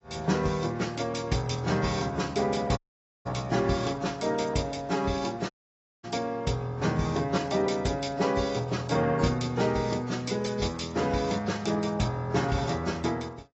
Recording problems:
codec artefacts; AAC, log-spectral distance 4 dB, nothing above 7.6 kHz
audio cutting out; at 3 s and at 5.5 s for 0.5 s

